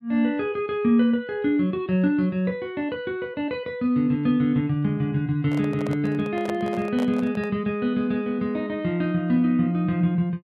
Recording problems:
handling noise; from 5.5 to 7.5 s; peak -4 dB vs average level

